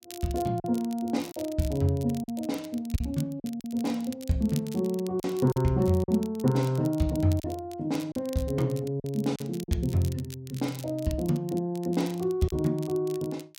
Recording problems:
crackle; vinyl, SNR 19 dB
lost packets; 4% of the sound replaced, filled with silence

